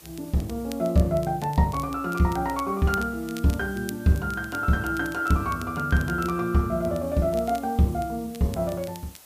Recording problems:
background hiss; slope -1 dB per octave, SNR 23 dB
crackling; vinyl, SNR 21 dB

